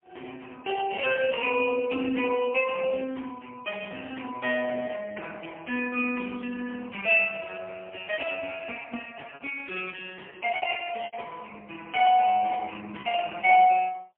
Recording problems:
telephone audio; 220 Hz to 3.1 kHz, AMR-NB, then MP3
lost packets; 2% of the sound replaced, filled with repeated pitch periods

